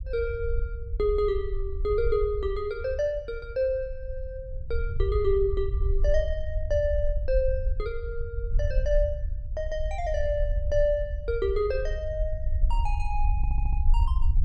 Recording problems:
rumble; below 60 Hz, SNR 2 dB
audio stuttering; at 13 s

